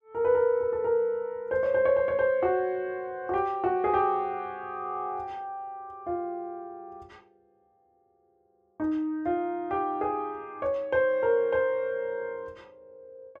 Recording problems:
none

